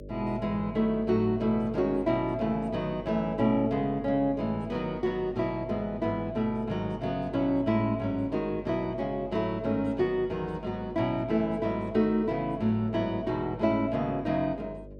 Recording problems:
hum; 50 Hz, harmonics up to 600 Hz, SNR 16 dB

